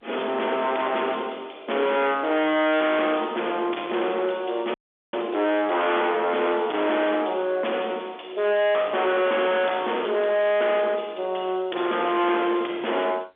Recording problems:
telephone audio; 320 Hz to 3.5 kHz, G.711
distortion; hard clipping, uneven, signal-to-distortion ratio 6 dB
audio freezing; at 4.5 s

